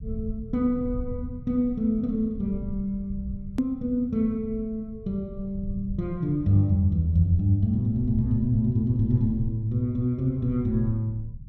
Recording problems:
rumble; below 100 Hz, SNR 12 dB
click at an edit; at 3.5 s

